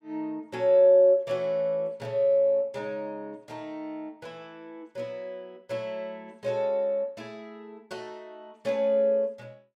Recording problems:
none

